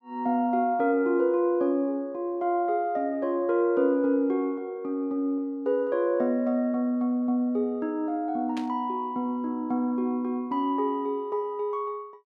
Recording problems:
static burst; at 8.5 s; peak -9 dB vs average level

